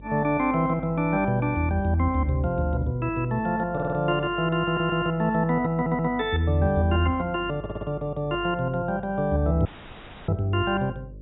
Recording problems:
low-pass filter; nothing above 3.8 kHz
hum; 50 Hz, harmonics up to 600 Hz, SNR 19 dB
stutter; 4 times, first at 3.5 s
audio cutting out; at 9.5 s for 0.5 s

